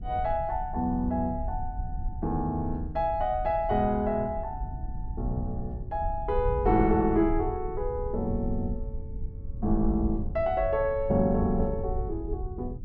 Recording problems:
low-frequency rumble; below 78 Hz, SNR 8 dB

